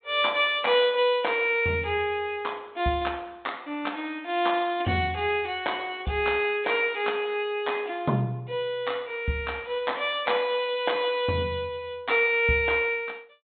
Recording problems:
treble missing; nothing above 3.5 kHz
lossy compression; MP3, log-spectral distance 2 dB

